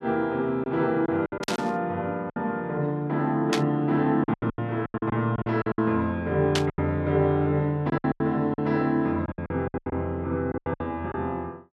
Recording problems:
packet loss; 13% of the sound replaced, filled with silence
burst of static; at 1.5 s, at 3.5 s and at 6.5 s; peak +4 dB vs average level

